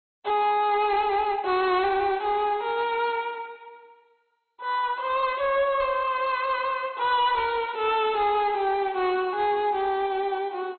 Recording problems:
lossy codec; MP2, log-spectral distance 3 dB, nothing above 4.2 kHz
distortion; hard clipping, uneven, signal-to-distortion ratio 11 dB

